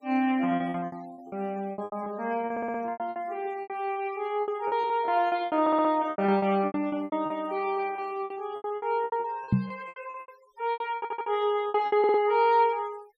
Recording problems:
denoising artefacts; signal-to-artefact ratio 27 dB
packet loss; 19% of the sound replaced, filled with repeated pitch periods
stutter; 4 times, first at 2.5 s
knock on the microphone; at 9.5 s; peak +8 dB vs average level

